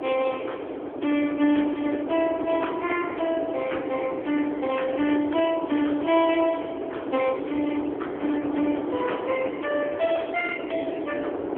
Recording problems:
telephone audio; 220 Hz to 3.3 kHz, AMR-NB
wind noise; below 570 Hz, SNR 6 dB

